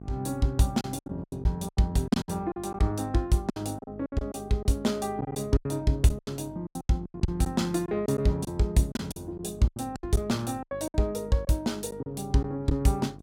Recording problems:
mains hum; 50 Hz, harmonics up to 850 Hz, SNR 17 dB
packet loss; 13% of the sound replaced, filled with silence

